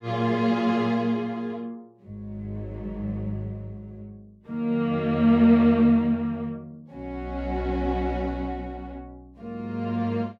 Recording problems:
none

